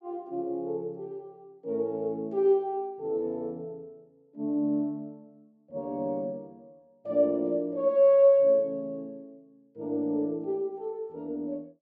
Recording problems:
none

